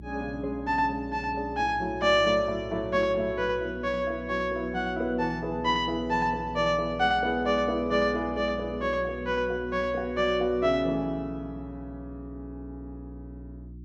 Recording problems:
hum; 60 Hz, harmonics up to 360 Hz, SNR 16 dB

